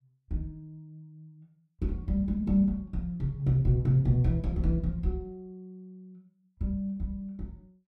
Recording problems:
none

